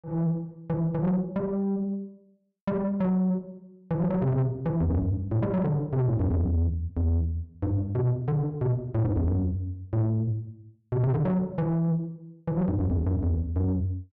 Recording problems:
distorted audio; soft clipping, signal-to-distortion ratio 10 dB

